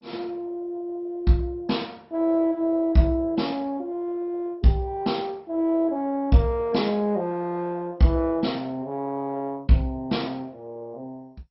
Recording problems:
lossy compression; MP2, log-spectral distance 2 dB, nothing above 5.5 kHz

